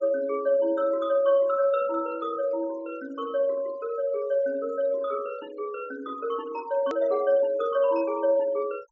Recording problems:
low-pass filter; nothing above 8 kHz
noise reduction artefacts; signal-to-artefact ratio 24 dB
hard cut with a click; at 7 s

